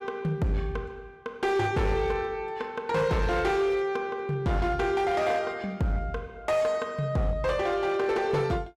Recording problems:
distorted audio; hard clipping, signal-to-distortion ratio 12 dB

